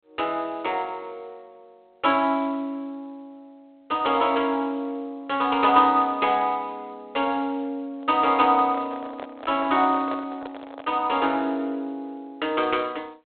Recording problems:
telephone audio; 240 Hz to 3.6 kHz, G.726
handling noise; from 8 to 11 s; peak -8 dB vs average level

